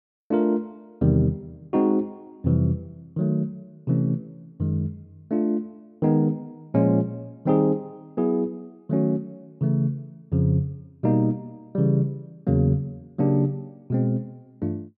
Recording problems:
none

